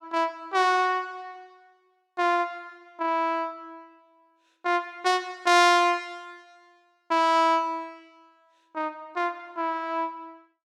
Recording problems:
none

